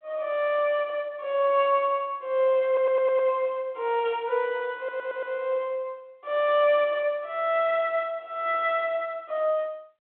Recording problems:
phone line; 280 Hz to 3.5 kHz, G.726
stutter; at 2.5 s and at 5 s

